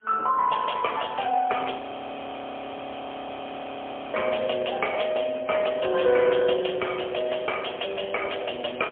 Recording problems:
telephone audio; 300 Hz to 3.3 kHz, AMR-NB, then MP3
frozen audio; at 2 s for 2.5 s

